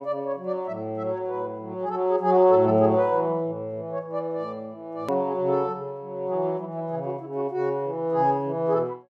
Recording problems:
hard cut with a click; at 5 s

